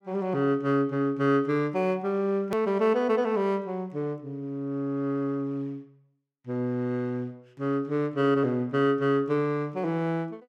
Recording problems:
hard cut with a click; at 2.5 s

